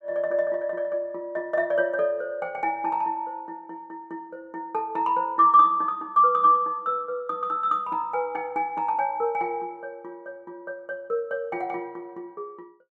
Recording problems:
none

